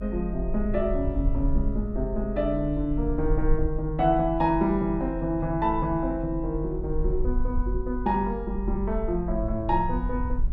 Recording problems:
rumble; below 48 Hz, SNR 5 dB

